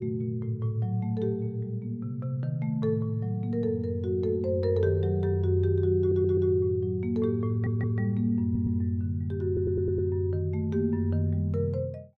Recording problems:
stutter; 4 times, first at 6 s

